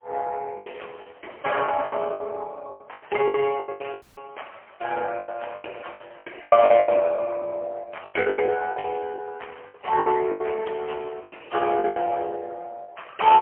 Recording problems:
telephone audio; 280 Hz to 3.3 kHz, AMR-NB, then MP3
lost packets; 16% of the sound replaced, filled with the last packet
audio cutting out; at 4 s

